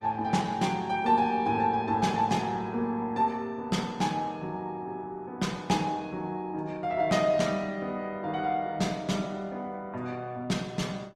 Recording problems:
lossy codec; Opus, log-spectral distance 2 dB, nothing above 15.5 kHz

